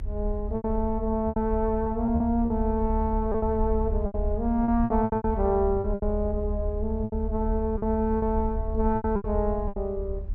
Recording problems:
rumble; below 74 Hz, strongest tone 38 Hz, SNR 5 dB
lost packets; 12% of the sound replaced, filled with repeated pitch periods

